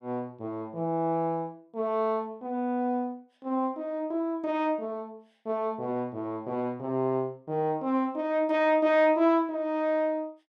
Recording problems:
none

